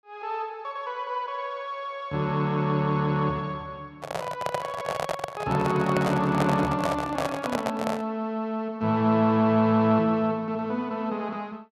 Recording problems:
microphone handling noise; from 4 to 8 s; peak +3 dB vs average level

